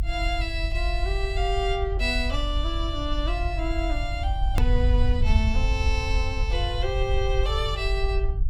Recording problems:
rumble; below 66 Hz, SNR -2 dB
hard cut with a click; at 4.5 s

